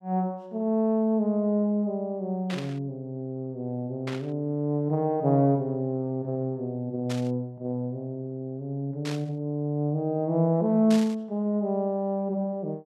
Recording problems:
static burst; 5 times, first at 2.5 s; peak -5 dB vs average level

